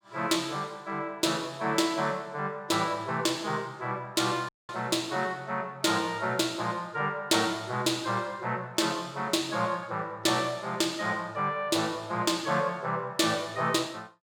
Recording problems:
audio cutting out; at 4.5 s

